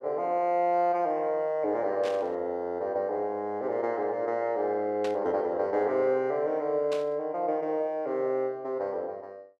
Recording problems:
static burst; at 2 s, at 5 s and at 7 s; peak -7 dB vs average level

